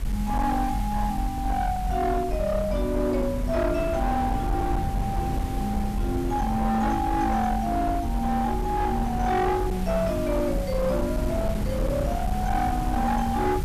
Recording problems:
distorted audio; hard clipping, signal-to-distortion ratio 12 dB
background hiss; slope -2 dB per octave, SNR 17 dB
low-frequency rumble; below 86 Hz, strongest tone 46 Hz, SNR 5 dB
wind on the microphone; below 310 Hz, SNR 9 dB

